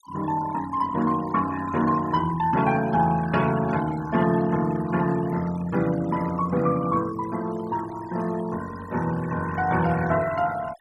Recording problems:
denoising artefacts; signal-to-artefact ratio 16 dB

